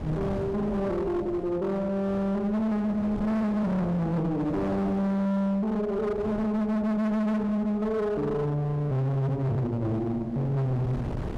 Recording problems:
distorted audio; hard clipping, signal-to-distortion ratio 7 dB
wind noise; below 410 Hz, SNR 14 dB

